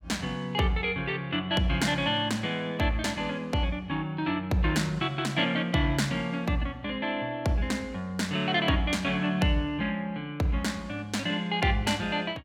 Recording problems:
none

